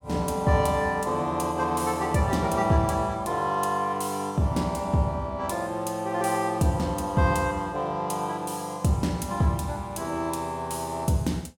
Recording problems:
none

